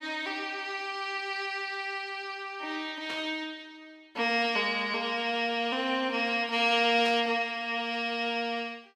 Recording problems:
static burst; at 3 s and at 7 s; peak -7 dB vs average level

